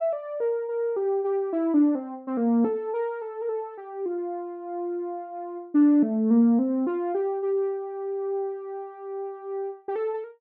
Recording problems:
none

